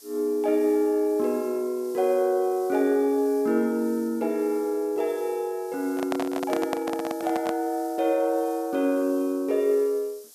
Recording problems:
hiss; SNR 23 dB
handling noise; from 6 to 7.5 s; peak -1 dB vs average level

